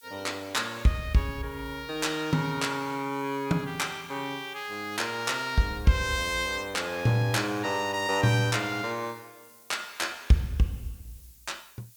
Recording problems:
background hiss; slope +4 dB per octave, SNR 24 dB

